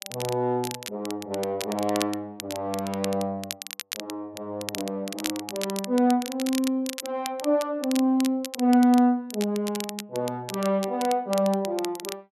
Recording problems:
crackle; vinyl, SNR 10 dB

